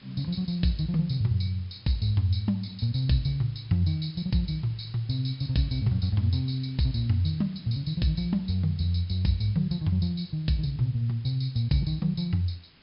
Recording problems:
treble cut off; nothing above 5.5 kHz
hiss; SNR 27 dB

